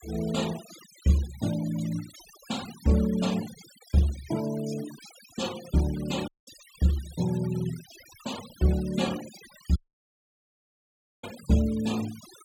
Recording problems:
noise reduction artefacts; signal-to-artefact ratio 15 dB
dropout; at 6.5 s and at 10 s for 1.5 s

